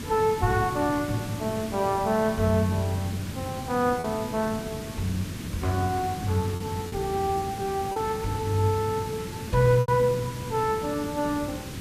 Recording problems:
background hiss; SNR 9 dB
packet loss; 2% of the sound replaced, filled with repeated pitch periods

